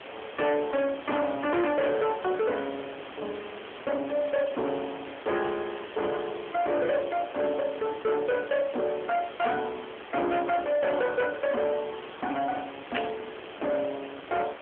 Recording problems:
phone line; 260 Hz to 3.6 kHz, AMR-NB
distorted audio; hard clipping, signal-to-distortion ratio 7 dB
hiss; SNR 14 dB
burst of static; at 13 s; peak +1 dB vs average level

